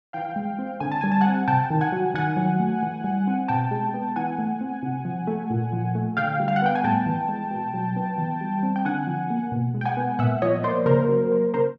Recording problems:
none

